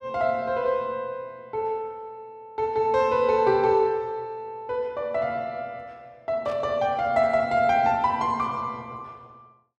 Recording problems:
burst of static; at 6.5 s; peak -16 dB vs average level

